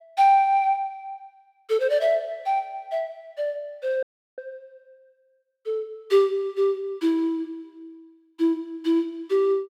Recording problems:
dropout; at 4 s

